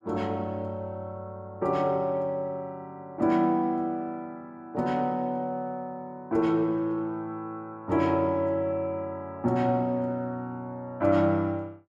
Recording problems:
none

